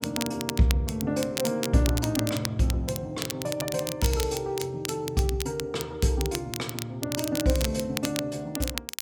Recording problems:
crackling; vinyl, SNR 7 dB

